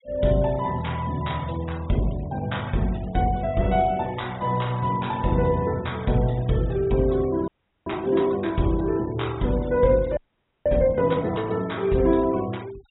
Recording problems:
treble missing; nothing above 3.8 kHz
noise reduction artefacts; signal-to-artefact ratio 23 dB
frozen audio; at 7.5 s and at 10 s

